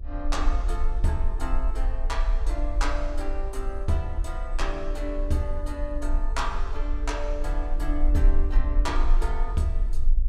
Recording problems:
hum; 60 Hz, harmonics up to 660 Hz, SNR 17 dB
low-frequency rumble; below 40 Hz, strongest tone 24 Hz, SNR -3 dB

